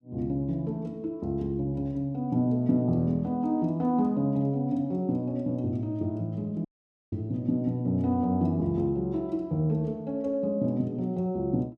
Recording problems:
dropout; at 6.5 s

